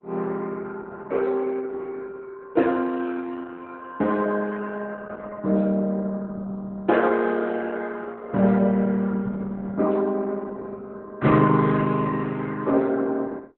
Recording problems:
lossy codec; Opus, log-spectral distance 3 dB

